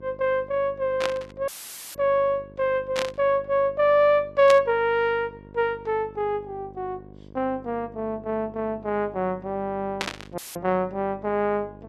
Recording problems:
electrical hum; 50 Hz, harmonics up to 1.1 kHz, SNR 22 dB
static burst; 4 times, first at 1 s; peak +1 dB vs average level
dropout; at 1.5 s and at 10 s; filled with static

